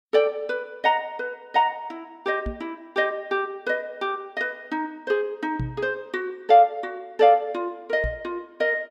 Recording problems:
microphone thump; at 2.5 s, at 5.5 s and at 8 s; peak -1 dB vs average level

